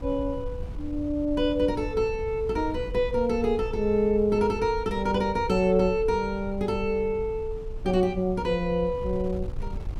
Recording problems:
wind on the microphone; below 84 Hz, SNR 12 dB

